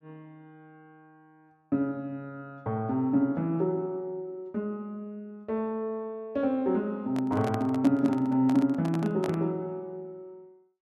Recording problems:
microphone handling noise; from 7 to 9.5 s; peak -2 dB vs average level

